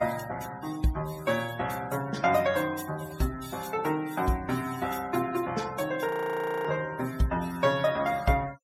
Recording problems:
denoising artefacts; signal-to-artefact ratio 17 dB
audio freezing; at 6 s for 0.5 s

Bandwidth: 17 kHz